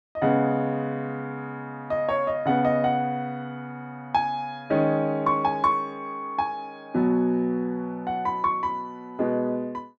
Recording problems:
none

